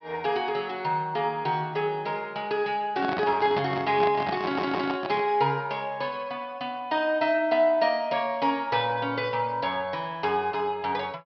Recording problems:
low-pass filter; nothing above 5.5 kHz
microphone handling noise; from 3 to 5.5 s; peak -1 dB vs average level
stutter; at 4.5 s

